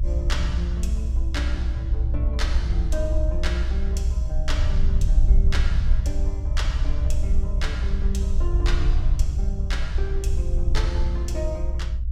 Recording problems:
rumble; below 62 Hz, SNR -9 dB

